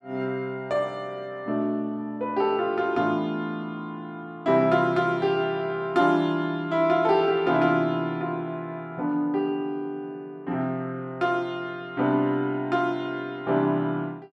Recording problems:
none

